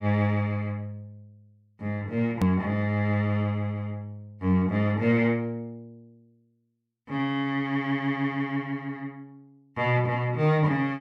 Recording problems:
hard cut with a click; at 2.5 s

